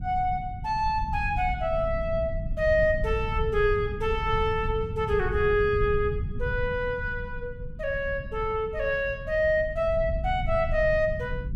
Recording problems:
low-frequency rumble; below 110 Hz, SNR 8 dB

